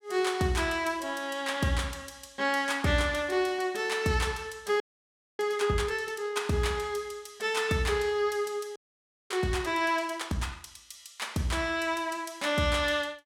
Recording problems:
frozen audio; at 5 s for 0.5 s and at 9 s for 0.5 s

